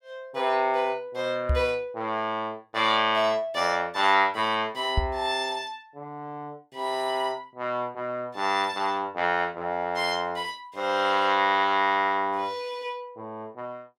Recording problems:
knock on the microphone; at 1.5 s and at 5 s; peak +4 dB vs average level

